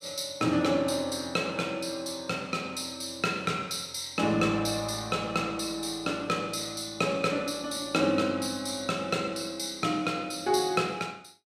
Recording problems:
none

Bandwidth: 14.5 kHz